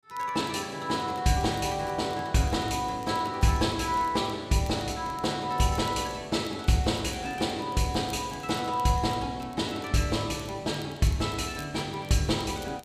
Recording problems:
crackling; vinyl, SNR 25 dB

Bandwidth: 15 kHz